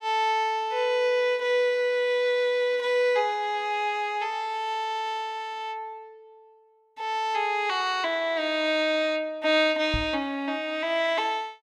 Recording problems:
knock on the microphone; at 10 s; peak -1 dB vs average level

